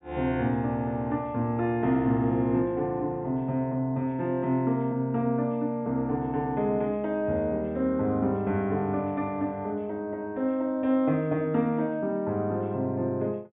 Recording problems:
low-pass filter; nothing above 4 kHz

